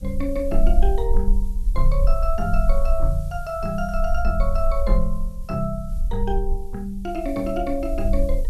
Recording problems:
background hiss; slope +1 dB per octave, SNR 25 dB
low-frequency rumble; below 40 Hz, strongest tone 18 Hz, SNR -1 dB

